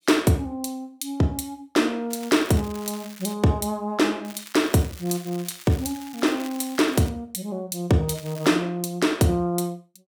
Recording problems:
crackle; from 2 to 3.5 s, from 4.5 to 7 s and at 8 s; loose cable, SNR 18 dB

